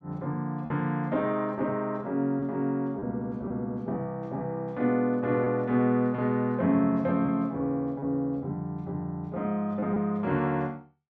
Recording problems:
packet loss; 2% of the sound replaced, filled with repeated pitch periods

